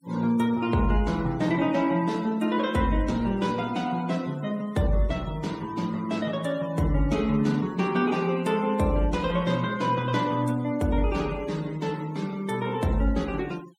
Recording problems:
denoising artefacts; signal-to-artefact ratio 21 dB

